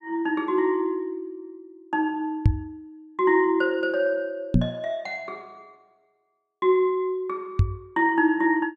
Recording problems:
microphone bump; at 2.5 s, at 4.5 s and at 7.5 s; peak +9 dB vs average level

